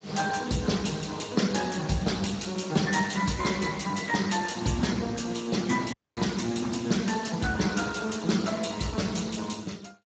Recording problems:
codec artefacts; Speex, log-spectral distance 6 dB, nothing above 7.6 kHz
dropout; at 6 s

